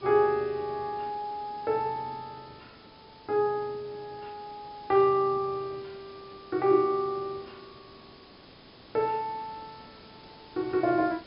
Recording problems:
treble missing; nothing above 5.5 kHz
background hiss; SNR 22 dB

